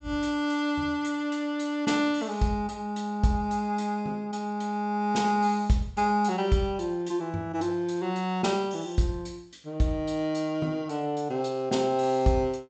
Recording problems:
low-pass filter; nothing above 8 kHz

